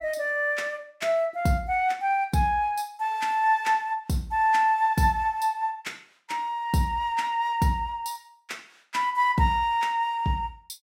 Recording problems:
none

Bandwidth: 16.5 kHz